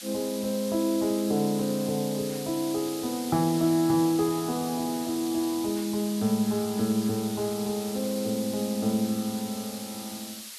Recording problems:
background hiss; slope +4 dB per octave, SNR 10 dB

